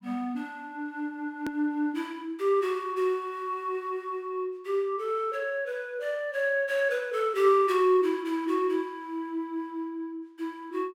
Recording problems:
hard cut with a click; at 1.5 s

